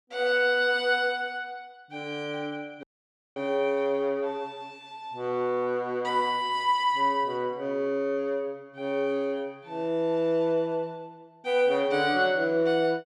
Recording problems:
audio cutting out; at 3 s for 0.5 s

